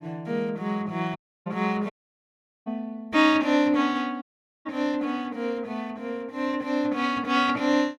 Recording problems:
audio cutting out; at 1 s, at 2 s for 1 s and at 4 s

